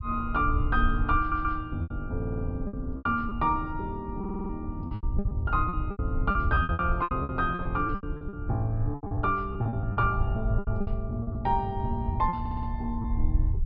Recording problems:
low-pass filter; nothing above 5.5 kHz
low-frequency rumble; below 86 Hz, SNR 4 dB
packet loss; 14% of the sound replaced, filled with repeated pitch periods
audio stuttering; 4 times, first at 1 s

